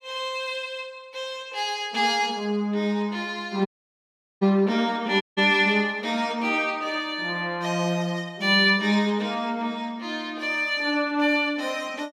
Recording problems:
dropout; at 3.5 s for 1 s and at 5 s

